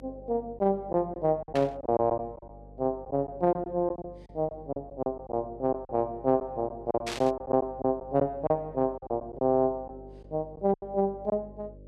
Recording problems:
hum; 50 Hz, harmonics up to 600 Hz, SNR 21 dB
packet loss; 9% of the sound replaced, filled with silence
burst of static; at 1.5 s and at 7 s; peak -2 dB vs average level

